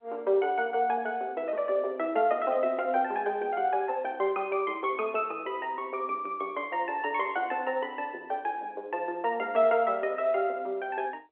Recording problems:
phone line; 300 Hz to 3.5 kHz, G.711

